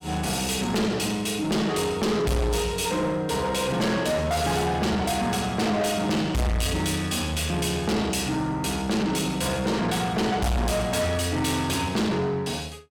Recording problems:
distorted audio; soft clipping, signal-to-distortion ratio 6 dB

